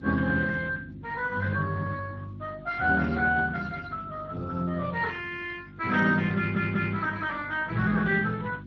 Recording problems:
lossy compression; Speex, log-spectral distance 4 dB
electrical hum; 50 Hz, harmonics up to 350 Hz, SNR 17 dB
stutter; at 6.5 s

